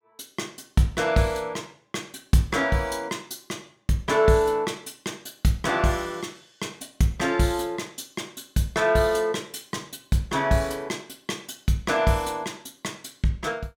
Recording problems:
none

